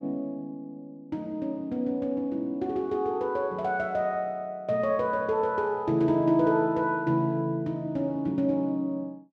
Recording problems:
none

